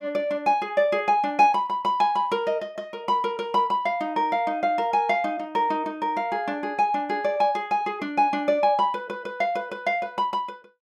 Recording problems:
none

